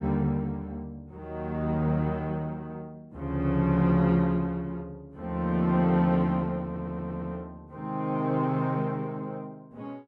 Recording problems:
stutter; at 6.5 s

